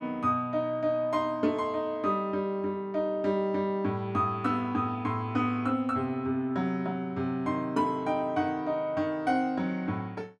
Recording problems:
none

